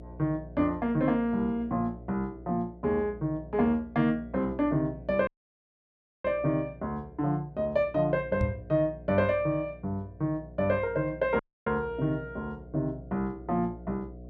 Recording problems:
mains hum; 60 Hz, harmonics up to 720 Hz, SNR 18 dB
dropout; at 5.5 s for 1 s and at 11 s
knock on the microphone; at 8.5 s; peak +3 dB vs average level

